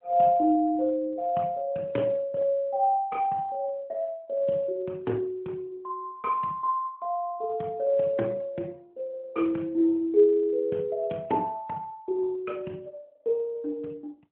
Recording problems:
telephone audio; 190 Hz to 3.7 kHz, AMR-NB

